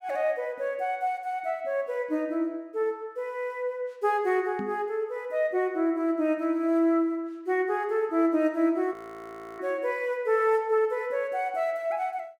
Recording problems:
microphone thump; at 4.5 s; peak -4 dB vs average level
frozen audio; at 9 s for 0.5 s

